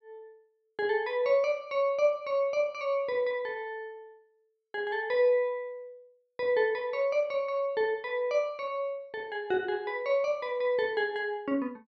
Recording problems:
none

